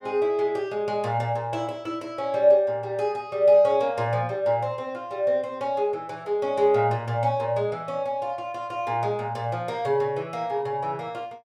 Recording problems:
none

